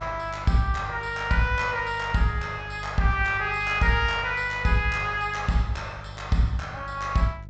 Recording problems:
treble cut off; nothing above 8 kHz
electrical hum; 50 Hz, harmonics up to 500 Hz, SNR 15 dB

